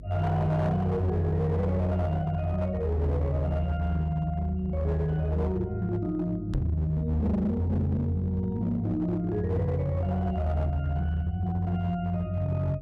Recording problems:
distortion; hard clipping, signal-to-distortion ratio 12 dB
hum; 50 Hz, harmonics up to 450 Hz, SNR 18 dB
microphone thump; at 6.5 s; peak +1 dB vs average level

